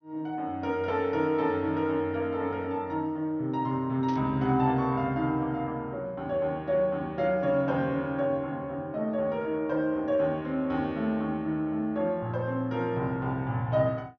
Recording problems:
low-pass filter; nothing above 6.2 kHz
static burst; at 4 s; peak -13 dB vs average level

